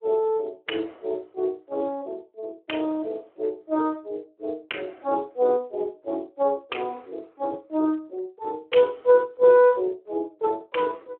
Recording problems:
telephone audio; 280 Hz to 3.1 kHz, Speex

